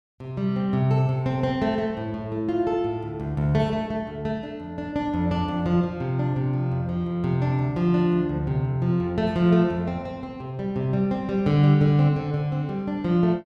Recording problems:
none

